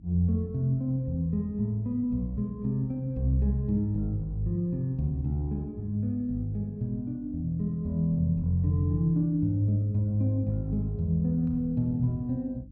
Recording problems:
hum; 50 Hz, harmonics up to 300 Hz, SNR 22 dB

